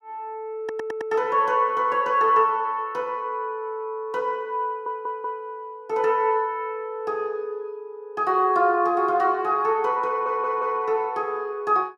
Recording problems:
stutter; at 0.5 s, at 4.5 s and at 10 s

